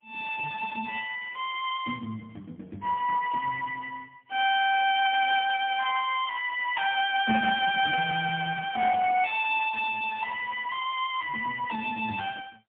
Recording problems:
phone line; 260 Hz to 3.5 kHz, AMR-NB, then MP3

